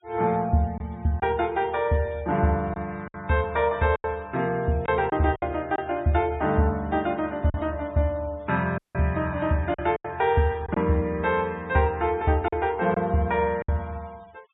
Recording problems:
treble cut off; nothing above 4 kHz
noise reduction artefacts; signal-to-artefact ratio 26 dB
packet loss; 5% of the sound replaced, filled with silence
audio cutting out; at 9 s

